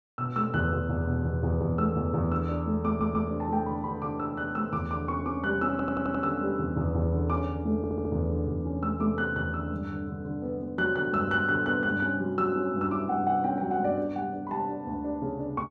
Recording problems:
stutter; at 3 s, at 5.5 s and at 8 s

